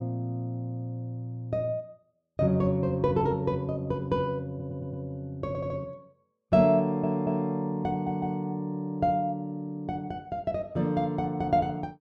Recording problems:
stutter; 4 times, first at 4.5 s

